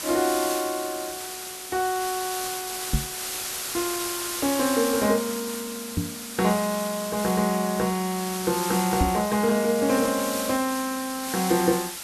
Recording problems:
background hiss; slope +1 dB per octave, SNR 5 dB
microphone thump; at 3 s, at 6 s and at 9 s; peak +5 dB vs average level

